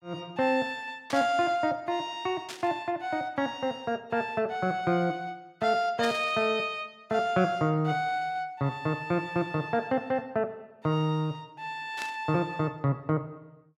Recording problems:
static burst; 4 times, first at 1 s; peak -4 dB vs average level

